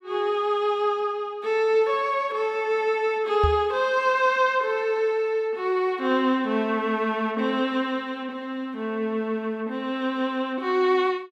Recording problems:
knock on the microphone; at 3.5 s; peak +3 dB vs average level

